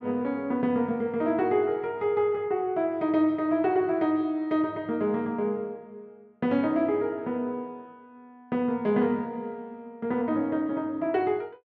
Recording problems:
none

